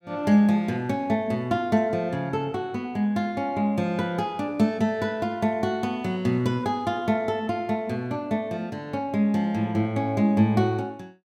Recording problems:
none

